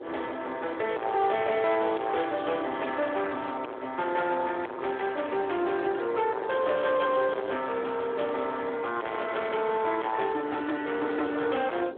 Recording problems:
telephone audio; 300 Hz to 3.6 kHz, Speex
distorted audio; soft clipping, signal-to-distortion ratio 9 dB
wind on the microphone; below 890 Hz, SNR 17 dB

